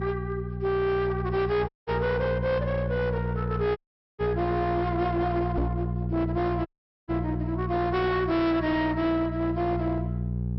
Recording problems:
treble missing; nothing above 5.6 kHz
distortion; hard clipping, uneven, signal-to-distortion ratio 11 dB
electrical hum; 60 Hz, harmonics up to 480 Hz, SNR 4 dB
audio cutting out; at 1.5 s, at 4 s and at 6.5 s
microphone thump; at 5.5 s; peak +3 dB vs average level

